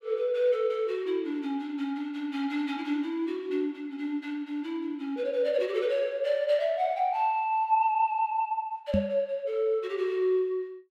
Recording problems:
microphone thump; at 9 s; peak +5 dB vs average level

